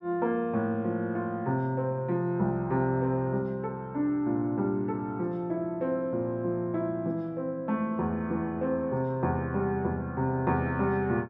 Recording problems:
none

